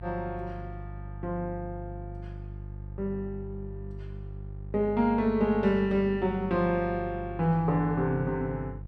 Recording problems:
electrical hum; 50 Hz, harmonics up to 350 Hz, SNR 12 dB

